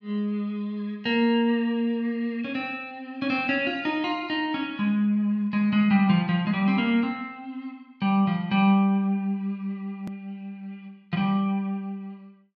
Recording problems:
edit click; at 10 s

